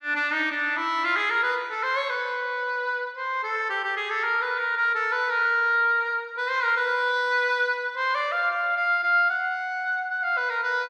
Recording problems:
none

